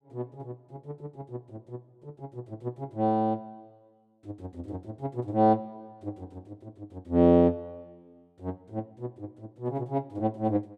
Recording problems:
none

